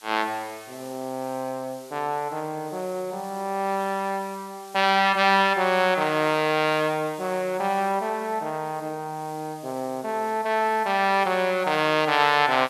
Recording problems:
background hiss; slope +3 dB per octave, SNR 22 dB

